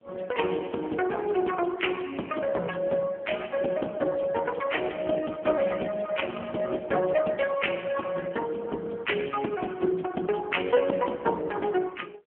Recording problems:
telephone audio; 260 Hz to 3.2 kHz, AMR-NB

